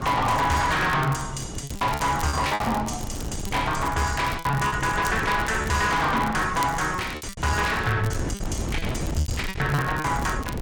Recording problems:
distorted audio; soft clipping, signal-to-distortion ratio 7 dB
wind noise; below 330 Hz, SNR 9 dB
crackling; vinyl, SNR 19 dB
lost packets; 9% of the sound replaced, filled with repeated pitch periods

